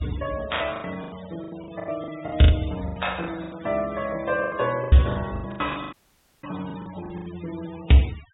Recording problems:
treble missing; nothing above 4 kHz
denoising artefacts; signal-to-artefact ratio 18 dB
packet loss; 19% of the sound replaced, filled with the last packet
dropout; at 6 s for 0.5 s

